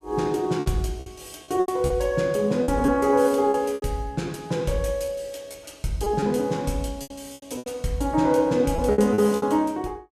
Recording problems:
packet loss; 10% of the sound replaced, filled with repeated pitch periods

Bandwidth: 14.5 kHz